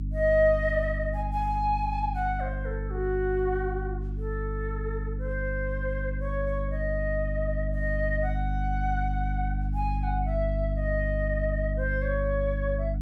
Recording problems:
hum; 50 Hz, harmonics up to 300 Hz, SNR 1 dB

